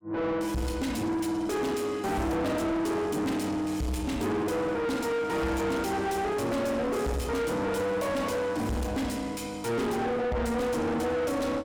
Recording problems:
distortion; soft clipping, signal-to-distortion ratio 6 dB

